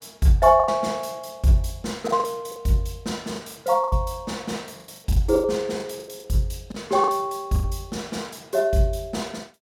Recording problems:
packet loss; 9% of the sound replaced, filled with the last packet

